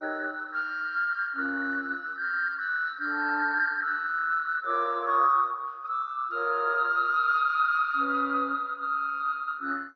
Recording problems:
codec artefacts; MP2, then AAC, log-spectral distance 3 dB

